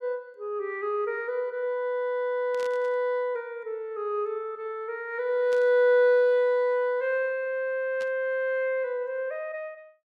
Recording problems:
burst of static; at 2.5 s, at 5.5 s and at 8 s; peak -13 dB vs average level

